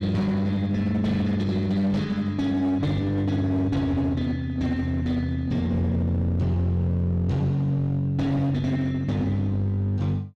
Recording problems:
distorted audio; hard clipping, uneven, signal-to-distortion ratio 10 dB

